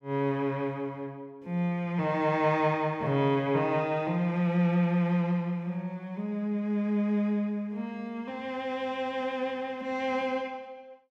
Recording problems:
none

